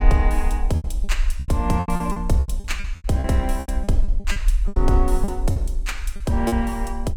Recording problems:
low-frequency rumble; below 48 Hz, SNR 1 dB
packet loss; 14% of the sound replaced, filled with repeated pitch periods

